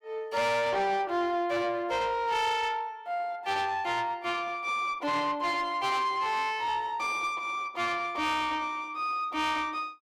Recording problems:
distorted audio; soft clipping, signal-to-distortion ratio 11 dB

